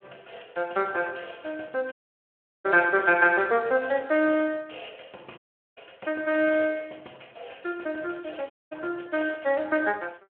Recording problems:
phone line; 280 Hz to 3.1 kHz, Speex
audio cutting out; at 2 s for 0.5 s, at 5.5 s and at 8.5 s

